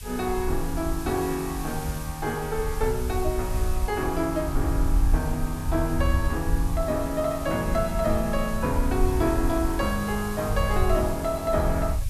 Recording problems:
hiss; slope +2 dB per octave, SNR 14 dB
low-frequency rumble; below 70 Hz, SNR 4 dB

